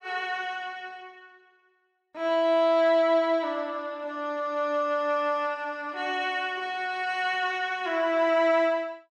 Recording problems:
none

